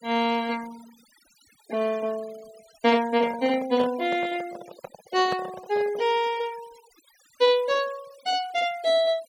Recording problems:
denoising artefacts; signal-to-artefact ratio 21 dB
handling noise; from 3 to 6 s; peak -4 dB vs average level

